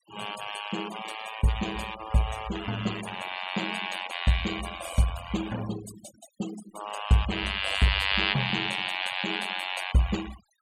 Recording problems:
denoising artefacts; signal-to-artefact ratio 11 dB

